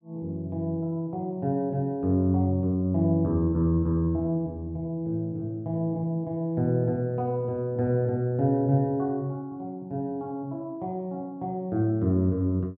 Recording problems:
none

